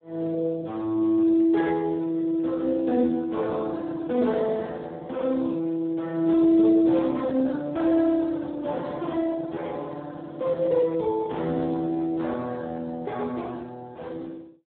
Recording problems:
phone line; 170 Hz to 2.3 kHz, Speex

